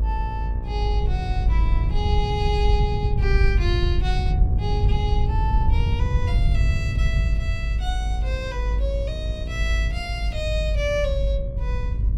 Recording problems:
hum; 60 Hz, harmonics up to 1.3 kHz, SNR 13 dB
low-frequency rumble; below 84 Hz, strongest tone 52 Hz, SNR -6 dB

